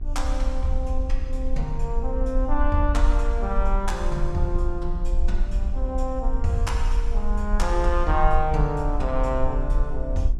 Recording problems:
hum; 60 Hz, harmonics up to 840 Hz, SNR 15 dB
rumble; below 48 Hz, SNR -1 dB

